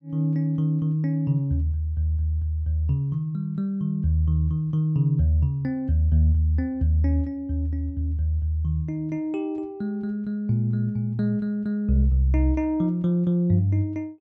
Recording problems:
none

